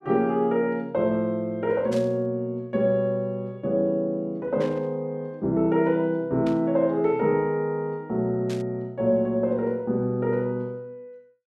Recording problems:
burst of static; 4 times, first at 2 s; peak -11 dB vs average level

